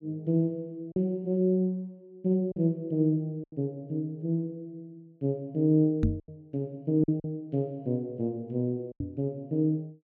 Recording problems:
packet loss; 4% of the sound replaced, filled with silence
microphone thump; at 6 s and at 9 s; peak +6 dB vs average level

